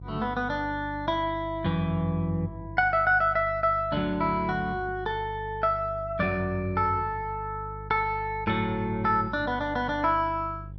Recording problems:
hum; 50 Hz, harmonics up to 350 Hz, SNR 14 dB

